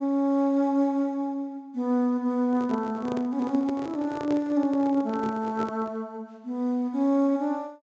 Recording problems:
low-pass filter; nothing above 8 kHz
handling noise; from 2.5 to 6 s; peak -4 dB vs average level

